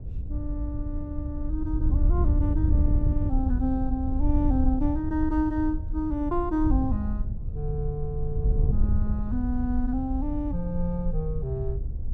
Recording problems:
wind noise; below 78 Hz, SNR -1 dB

